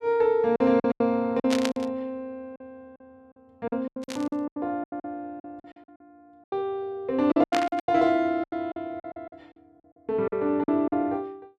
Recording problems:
lost packets; 15% of the sound replaced, filled with silence
static burst; at 1.5 s, at 4 s and at 7.5 s; peak +2 dB vs average level

